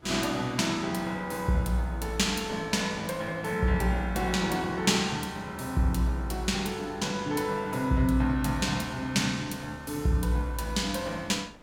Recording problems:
wind on the microphone; below 940 Hz, SNR 24 dB

